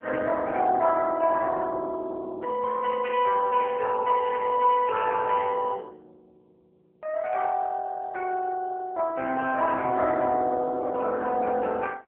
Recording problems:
telephone audio; 320 Hz to 3.5 kHz, AMR-NB

